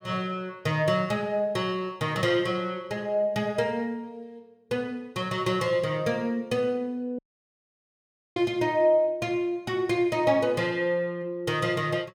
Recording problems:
dropout; at 7 s for 1 s

